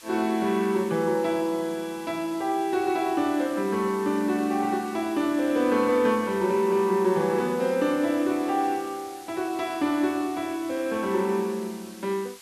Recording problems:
hiss; slope +2 dB per octave, SNR 20 dB

